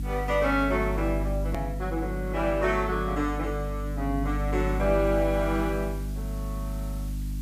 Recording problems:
hum; 50 Hz, harmonics up to 300 Hz, SNR 4 dB
hiss; slope -1 dB per octave, SNR 23 dB
hard cut with a click; at 1.5 s

